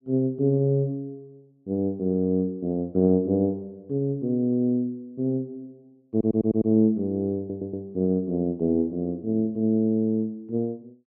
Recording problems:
stutter; at 6 s and at 7.5 s

